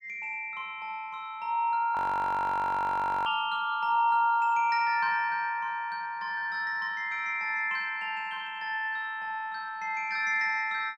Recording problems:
frozen audio; at 2 s for 1.5 s

